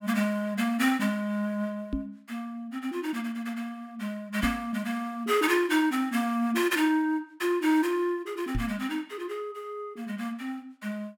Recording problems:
microphone bump; at 2 s, at 4.5 s and at 8.5 s; peak +2 dB vs average level

